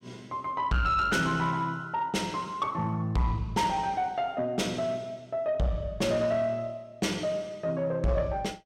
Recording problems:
distorted audio; soft clipping, signal-to-distortion ratio 10 dB

